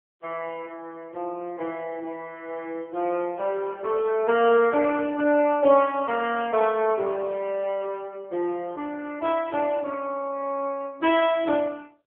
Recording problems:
telephone audio; 260 Hz to 3.3 kHz, AMR-NB

